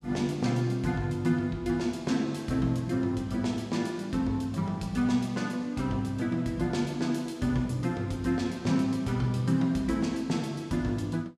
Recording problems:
none

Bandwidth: 14.5 kHz